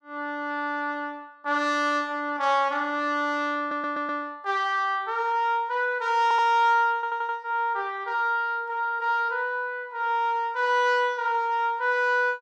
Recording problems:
stutter; at 3.5 s, at 6 s and at 7 s

